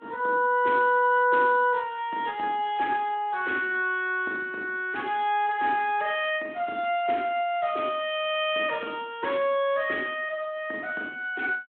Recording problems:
phone line; 280 Hz to 3.6 kHz, Speex

